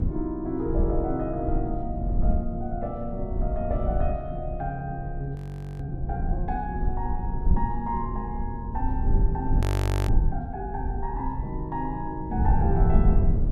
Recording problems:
rumble; below 82 Hz, SNR -2 dB
audio freezing; at 5.5 s and at 9.5 s

